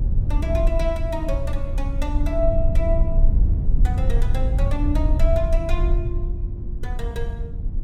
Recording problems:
low-frequency rumble; below 64 Hz, SNR -5 dB

